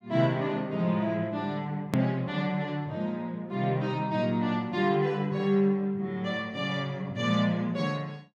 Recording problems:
click at an edit; at 2 s

